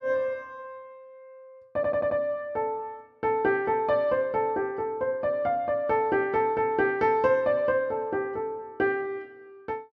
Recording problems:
audio stuttering; at 2 s

